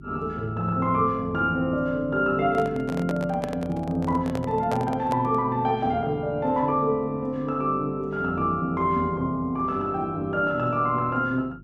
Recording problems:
electrical hum; 50 Hz, harmonics up to 400 Hz, SNR 20 dB
microphone handling noise; from 2.5 to 5.5 s; peak -2 dB vs average level

